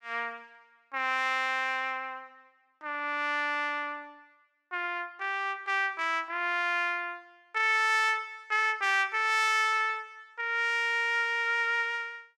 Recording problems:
none

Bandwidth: 15.5 kHz